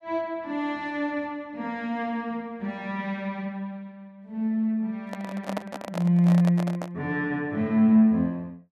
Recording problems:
handling noise; from 5 to 7 s; peak -1 dB vs average level

